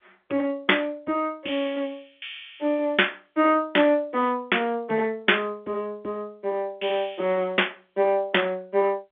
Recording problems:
telephone audio; 260 Hz to 3.5 kHz, G.711

